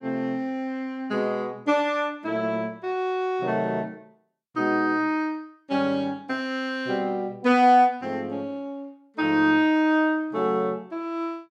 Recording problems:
none

